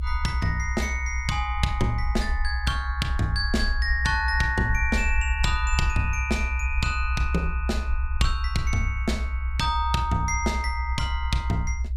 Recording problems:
low-frequency rumble; below 66 Hz, strongest tone 64 Hz, SNR 2 dB

